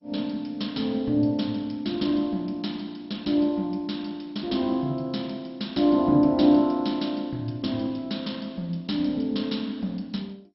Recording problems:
lossy codec; MP2, log-spectral distance 4 dB, nothing above 5.5 kHz

